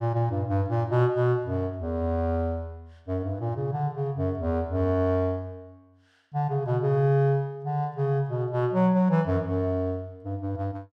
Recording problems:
none

